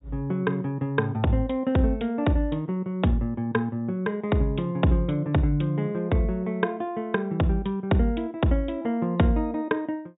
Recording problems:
treble missing; nothing above 4 kHz

